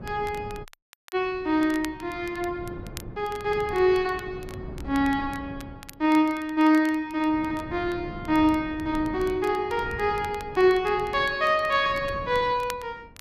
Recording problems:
wind noise; below 280 Hz, SNR 16 dB
crackle; vinyl, SNR 23 dB
dropout; at 0.5 s

